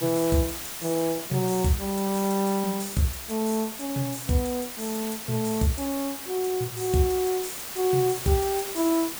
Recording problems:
hiss; slope -1 dB per octave, SNR 7 dB

